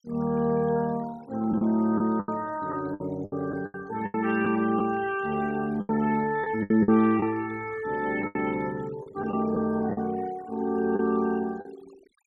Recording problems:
noise reduction artefacts; signal-to-artefact ratio 22 dB
packet loss; 8% of the sound replaced, filled with the last packet

